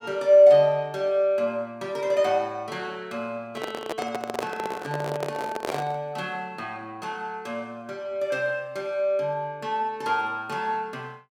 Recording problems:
handling noise; from 3.5 to 6 s; peak +1 dB vs average level

